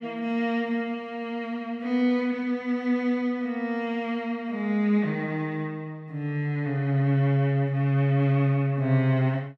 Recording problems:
none

